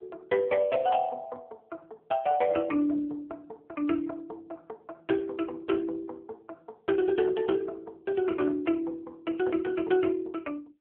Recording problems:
phone line; 240 Hz to 3.1 kHz, AMR-NB

